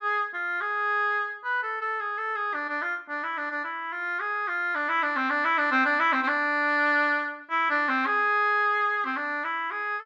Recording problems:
none

